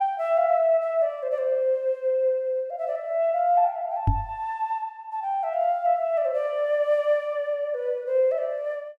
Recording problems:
knock on the microphone; at 4 s; peak +6 dB vs average level

